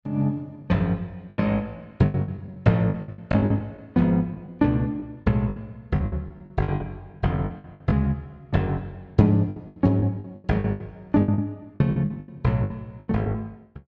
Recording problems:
lost packets; 16% of the sound replaced, filled with the last packet

